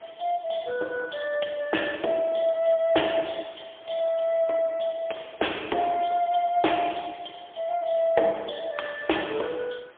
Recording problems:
telephone audio; 280 Hz to 3.5 kHz, AMR-NB, then MP3
hiss; SNR 26 dB

